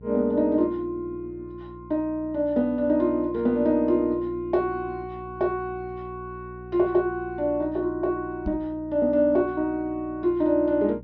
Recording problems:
treble cut off; nothing above 6.2 kHz
hum; 60 Hz, harmonics up to 540 Hz, SNR 19 dB
microphone bump; at 8.5 s; peak -3 dB vs average level

